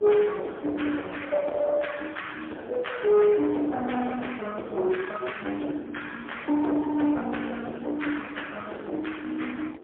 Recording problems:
telephone audio; 260 Hz to 3.4 kHz, AMR-NB, then MP3
distorted audio; soft clipping, signal-to-distortion ratio 10 dB
wind noise; below 600 Hz, SNR 20 dB

